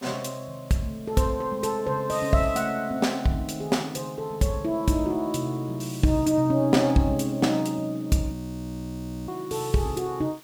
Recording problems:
background hiss; slope -2 dB per octave, SNR 25 dB
frozen audio; at 8.5 s for 1 s

